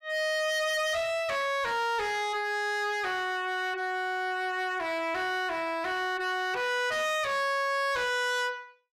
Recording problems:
distortion; hard clipping, signal-to-distortion ratio 7 dB

